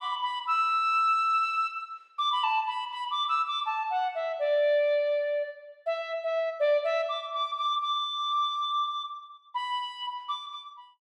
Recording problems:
none

